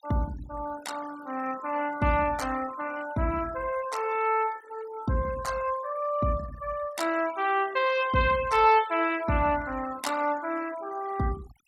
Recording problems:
noise reduction artefacts; signal-to-artefact ratio 18 dB

